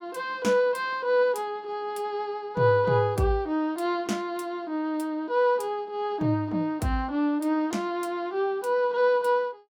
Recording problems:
none

